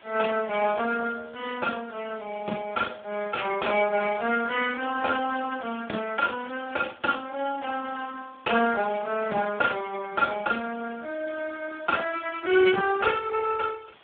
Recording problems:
telephone audio; 260 Hz to 2.5 kHz, Speex
hiss; SNR 27 dB

